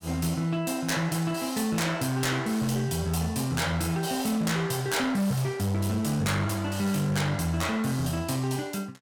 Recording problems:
distorted audio; hard clipping, uneven, signal-to-distortion ratio 11 dB

